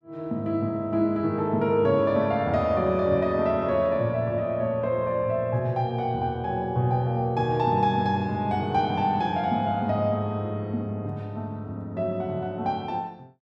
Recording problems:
none

